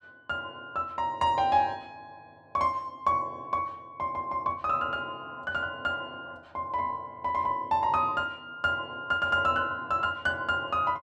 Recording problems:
none

